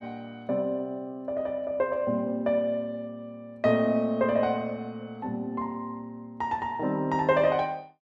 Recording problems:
none

